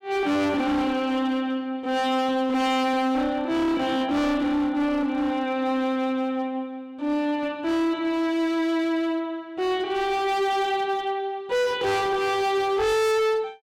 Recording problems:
distorted audio; hard clipping, signal-to-distortion ratio 7 dB

